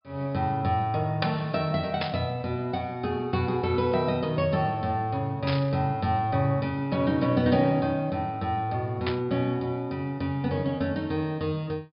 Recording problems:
low-pass filter; nothing above 5.5 kHz
burst of static; at 2 s, at 5.5 s and at 9 s; peak 0 dB vs average level

